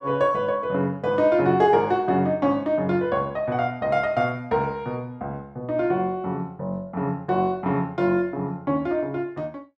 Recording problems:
none

